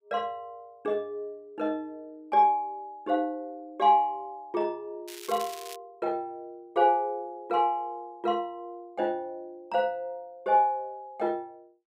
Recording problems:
crackling; at 5 s; loose cable, SNR 14 dB

